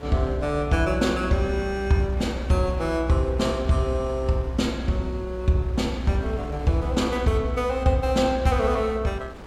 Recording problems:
wind noise; below 780 Hz, SNR 19 dB

